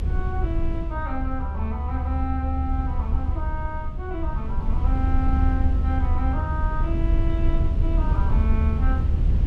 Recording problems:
low-frequency rumble; below 74 Hz, SNR -7 dB

